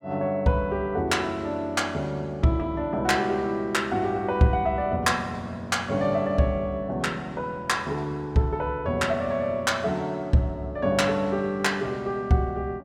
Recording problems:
none

